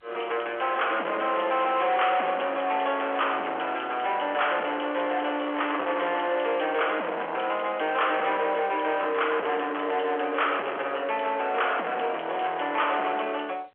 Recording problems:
phone line; 340 Hz to 3.3 kHz, G.711
distortion; soft clipping, signal-to-distortion ratio 8 dB

